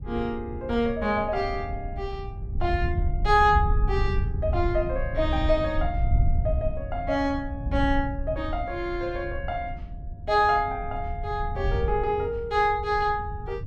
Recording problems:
wind on the microphone; below 86 Hz, SNR 5 dB

